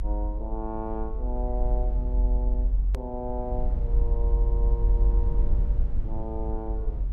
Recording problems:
rumble; below 48 Hz, strongest tone 46 Hz, SNR -8 dB
edit click; at 3 s

